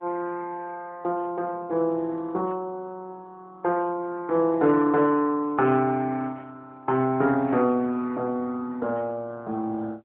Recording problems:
phone line; 220 Hz to 2.4 kHz, AMR-NB

